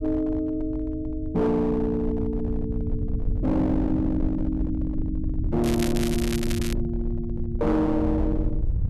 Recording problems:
distorted audio; hard clipping, uneven, signal-to-distortion ratio 10 dB
low-frequency rumble; below 100 Hz, SNR 5 dB
crackling; from 5.5 to 6.5 s; loose cable, SNR 9 dB

